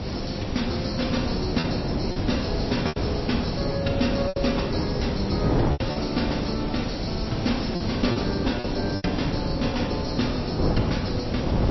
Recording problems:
codec artefacts; MP3, log-spectral distance 12 dB, nothing above 5.7 kHz
hiss; slope 0 dB per octave, SNR 13 dB
wind on the microphone; below 400 Hz, SNR 0 dB
lost packets; 5% of the sound replaced, filled with repeated pitch periods

